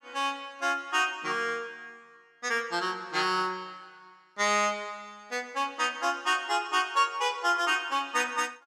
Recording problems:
none

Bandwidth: 15.5 kHz